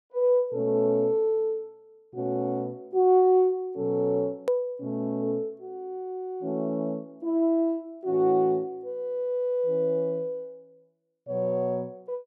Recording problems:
click at an edit; at 4.5 s

